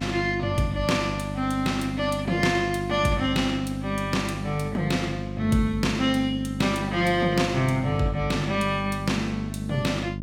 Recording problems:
hum; 50 Hz, harmonics up to 600 Hz, SNR 7 dB

